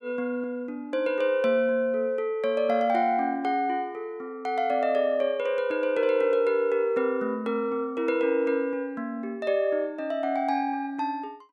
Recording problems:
none

